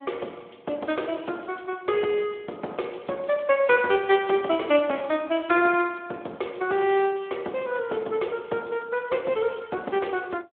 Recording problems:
phone line; 280 Hz to 3.4 kHz, Speex

